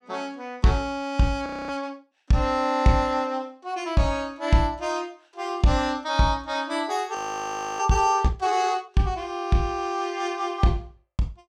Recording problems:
audio freezing; at 1.5 s and at 7 s for 0.5 s

